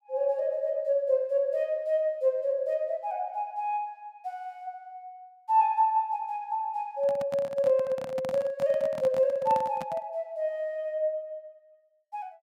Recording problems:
microphone handling noise; from 7 to 10 s; peak -8 dB vs average level

